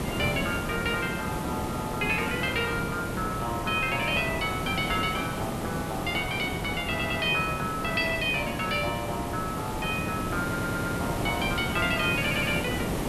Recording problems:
hiss; slope -7 dB per octave, SNR 3 dB
audio stuttering; at 7 s, at 10 s and at 12 s

